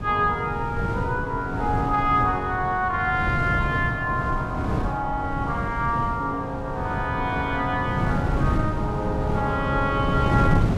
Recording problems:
wind noise; below 240 Hz, SNR 3 dB

